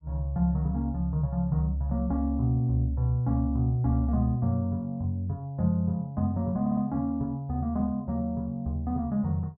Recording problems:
audio stuttering; at 6.5 s

